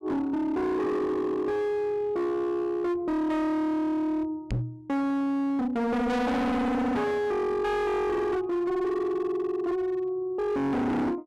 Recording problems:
distortion; hard clipping, signal-to-distortion ratio 6 dB
microphone thump; at 4.5 s; peak +1 dB vs average level

